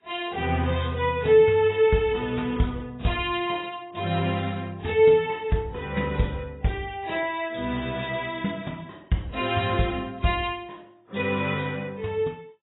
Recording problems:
lossy compression; AAC, log-spectral distance 4 dB, nothing above 3.5 kHz

